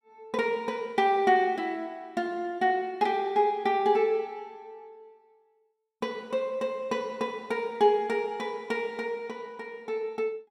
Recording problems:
none

